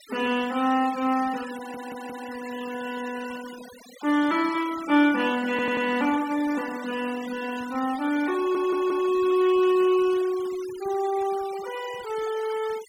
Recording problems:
noise reduction artefacts; signal-to-artefact ratio 16 dB
stutter; at 1.5 s, at 5.5 s and at 8.5 s

